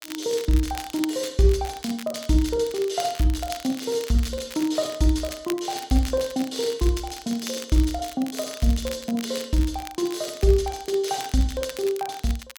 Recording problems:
crackling; vinyl, SNR 15 dB

